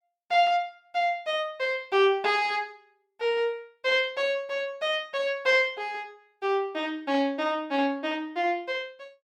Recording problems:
none

